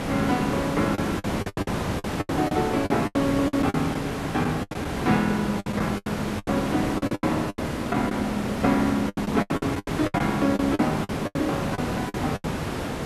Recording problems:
background hiss; slope -6 dB per octave, SNR 3 dB
packet loss; 16% of the sound replaced, filled with the last packet

